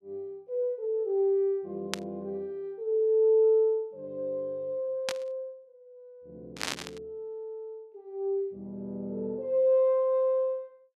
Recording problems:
static burst; at 2 s, at 5 s and at 6.5 s; peak +2 dB vs average level

